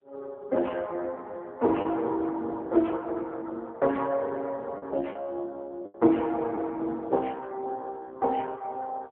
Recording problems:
telephone audio; 240 Hz to 2.8 kHz, AMR-NB
lost packets; 2% of the sound replaced, filled with the last packet

